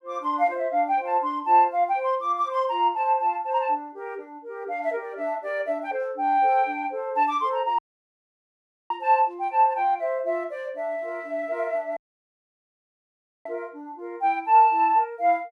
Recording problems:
audio cutting out; at 8 s for 1 s and at 12 s for 1.5 s

